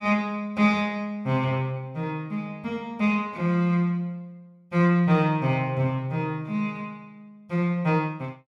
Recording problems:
none

